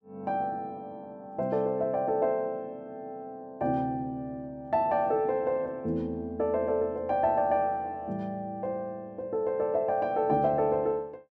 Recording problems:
none

